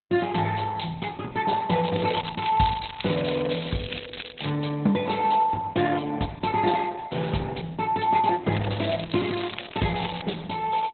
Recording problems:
codec artefacts; Opus, log-spectral distance 11 dB, nothing above 4.1 kHz
crackling; from 2 to 4.5 s and from 8.5 to 10 s; loose cable, SNR 11 dB

